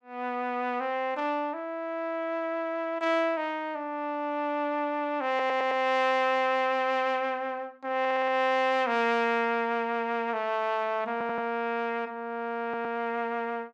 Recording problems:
audio stuttering; 4 times, first at 5.5 s

